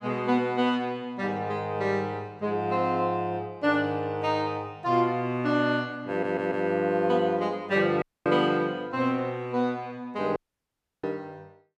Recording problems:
audio stuttering; at 6 s
audio cutting out; at 8 s and at 10 s for 0.5 s

